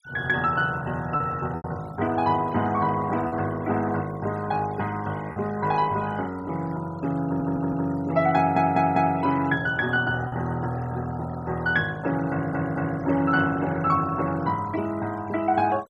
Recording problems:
noise reduction artefacts; signal-to-artefact ratio 20 dB
packet loss; 1.7% of the sound replaced, filled with repeated pitch periods
audio stuttering; at 7.5 s, at 8.5 s and at 12 s

